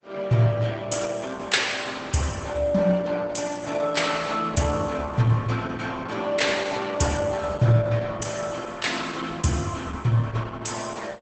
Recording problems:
lossy codec; Opus, log-spectral distance 5 dB, nothing above 8 kHz

